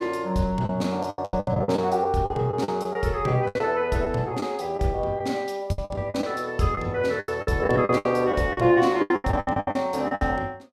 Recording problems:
lost packets; 16% of the sound replaced, filled with the last packet

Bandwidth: 15.5 kHz